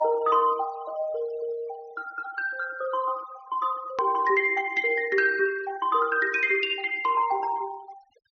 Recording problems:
treble missing; nothing above 6.4 kHz
denoising artefacts; signal-to-artefact ratio 22 dB
edit click; at 4 s

